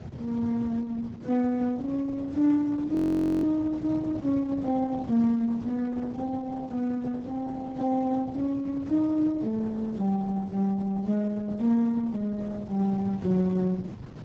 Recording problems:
codec artefacts; Speex, then Opus, log-spectral distance 3 dB, nothing above 20.1 kHz
wind on the microphone; below 240 Hz, SNR 14 dB
audio freezing; at 3 s

